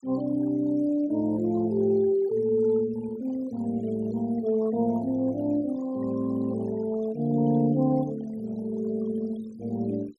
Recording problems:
noise reduction artefacts; signal-to-artefact ratio 21 dB

